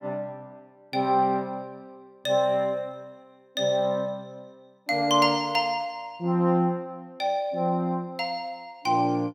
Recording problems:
none

